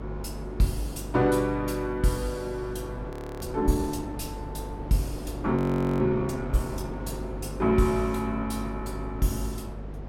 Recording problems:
hum; 50 Hz, harmonics up to 500 Hz, SNR 11 dB
wind noise; below 640 Hz, SNR 14 dB
frozen audio; at 3 s and at 5.5 s

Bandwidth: 16 kHz